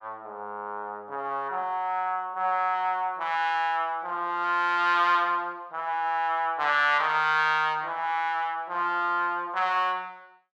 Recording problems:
none

